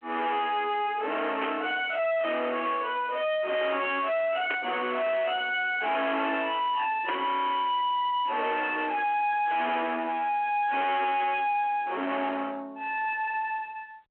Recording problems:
telephone audio; 260 Hz to 3.3 kHz, G.726
distortion; soft clipping, signal-to-distortion ratio 5 dB
static burst; at 1.5 s, at 4.5 s and at 7 s; peak -2 dB vs average level

